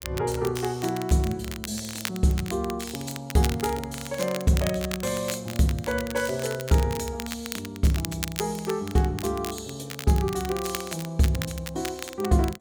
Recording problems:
crackle; vinyl, SNR 10 dB

